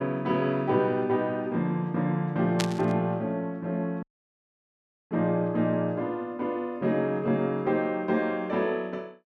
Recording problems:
static burst; at 2.5 s; peak +3 dB vs average level
audio cutting out; at 4 s for 1 s

